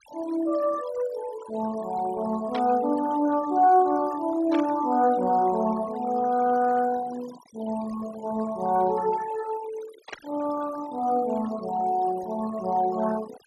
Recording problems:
denoising artefacts; signal-to-artefact ratio 16 dB
static burst; at 2.5 s, at 4.5 s and at 10 s; peak -7 dB vs average level

